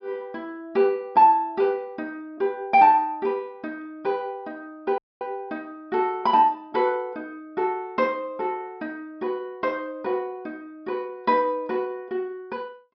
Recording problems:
treble cut off; nothing above 5.5 kHz
dropout; at 5 s

